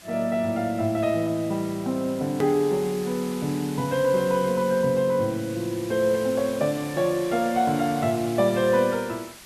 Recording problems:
background hiss; slope 0 dB per octave, SNR 17 dB
click at an edit; at 2.5 s

